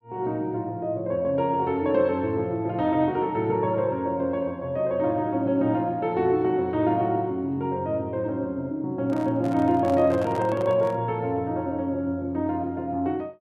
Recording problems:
microphone handling noise; from 9 to 11 s; peak -7 dB vs average level

